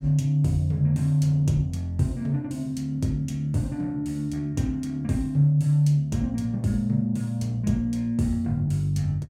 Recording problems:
none

